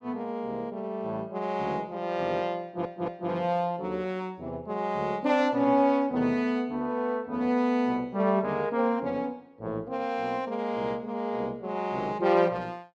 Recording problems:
audio stuttering; at 2.5 s

